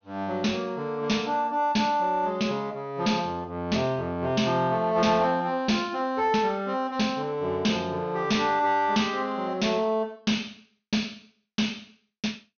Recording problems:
low-pass filter; nothing above 6.4 kHz
distortion; soft clipping, signal-to-distortion ratio 11 dB

